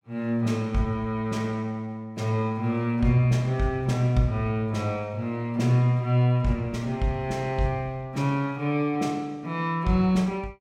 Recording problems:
none

